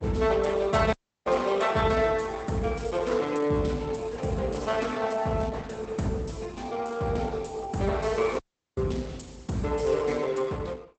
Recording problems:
codec artefacts; Opus, log-spectral distance 4 dB, nothing above 8 kHz
audio cutting out; at 1 s and at 8.5 s

